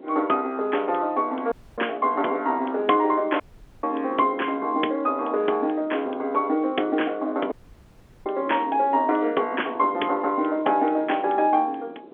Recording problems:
telephone audio; 280 Hz to 3.4 kHz, G.711
wind on the microphone; below 480 Hz, SNR 18 dB
audio cutting out; at 1.5 s, at 3.5 s and at 7.5 s for 0.5 s

